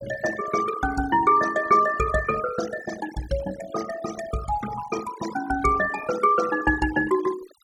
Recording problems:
denoising artefacts; signal-to-artefact ratio 12 dB

